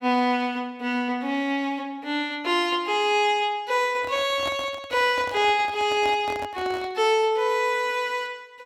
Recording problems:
microphone handling noise; from 4 to 7 s; peak -7 dB vs average level

